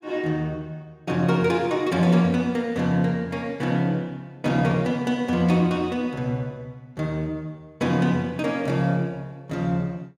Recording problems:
burst of static; at 5.5 s; peak -12 dB vs average level

